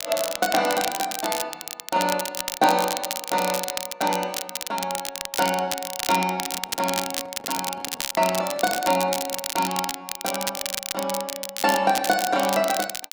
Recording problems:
crackling; vinyl, SNR 4 dB
handling noise; from 6.5 to 9.5 s; peak -13 dB vs average level

